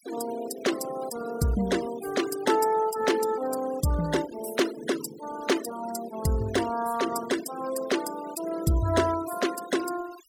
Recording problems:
denoising artefacts; signal-to-artefact ratio 13 dB

